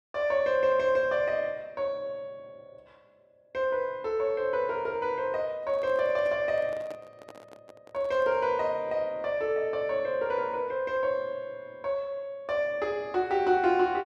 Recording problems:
handling noise; from 5.5 to 8.5 s; peak -11 dB vs average level

